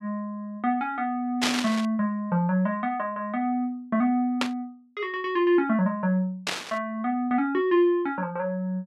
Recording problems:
static burst; at 1.5 s, at 4.5 s and at 6.5 s; peak +5 dB vs average level

